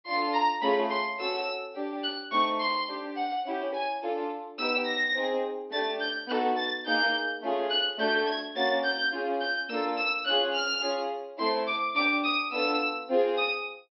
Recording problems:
treble cut off; nothing above 5.6 kHz

